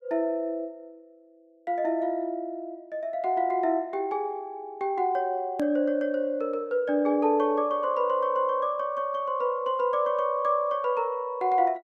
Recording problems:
edit click; at 5.5 s

